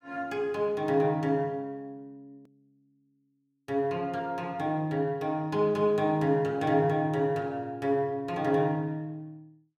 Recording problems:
edit click; at 2.5 s

